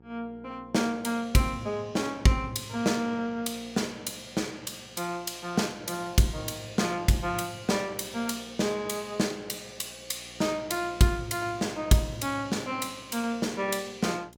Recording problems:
hum; 60 Hz, harmonics up to 960 Hz, SNR 26 dB

